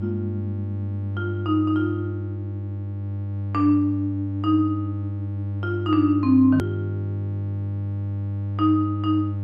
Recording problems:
electrical hum; 50 Hz, harmonics up to 600 Hz, SNR 5 dB
hard cut with a click; at 6.5 s

